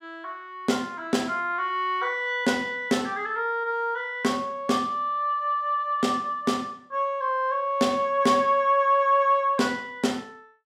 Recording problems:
none

